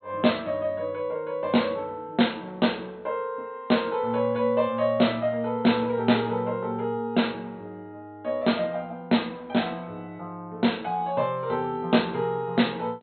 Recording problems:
low-pass filter; nothing above 4.2 kHz

